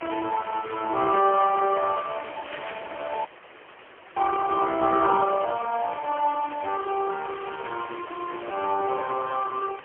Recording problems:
telephone audio; 280 Hz to 2.8 kHz, AMR-NB, then MP3
hiss; SNR 15 dB
crackling; at 2.5 s; loose cable, SNR 16 dB
audio cutting out; at 3.5 s for 1 s

